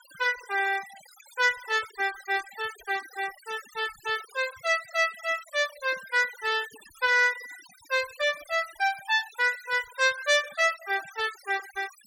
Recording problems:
noise reduction artefacts; signal-to-artefact ratio 17 dB

